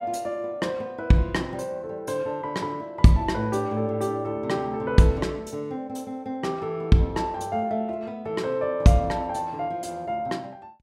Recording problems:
none

